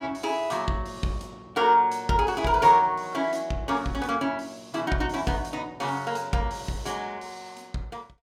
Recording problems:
none

